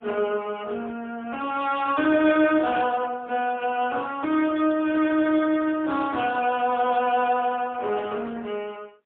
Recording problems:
telephone audio; 280 Hz to 3.4 kHz, AMR-NB, then MP3

